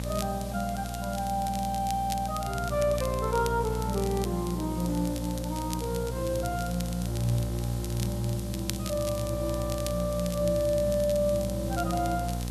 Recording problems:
hum; 60 Hz, harmonics up to 1 kHz, SNR 5 dB
hiss; SNR 15 dB
crackle; vinyl, SNR 13 dB

